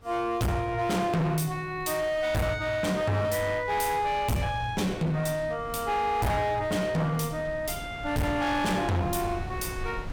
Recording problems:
distorted audio; hard clipping, signal-to-distortion ratio 6 dB
wind on the microphone; below 300 Hz, SNR 16 dB

